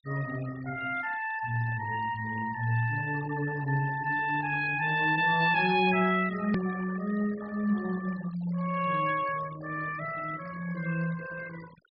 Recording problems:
treble missing; nothing above 5.5 kHz
noise reduction artefacts; signal-to-artefact ratio 17 dB
edit click; at 6.5 s

